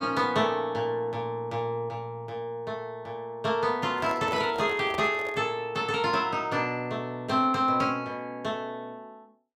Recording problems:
handling noise; from 4 to 5.5 s; peak -4 dB vs average level

